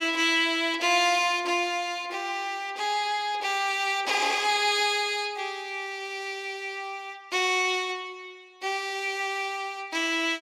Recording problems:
none

